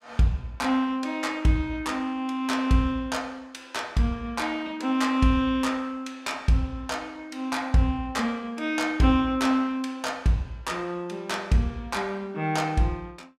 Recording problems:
none

